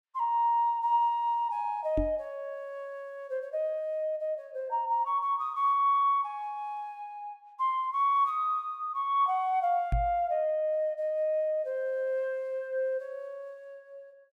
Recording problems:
knock on the microphone; at 2 s and at 10 s; peak +3 dB vs average level

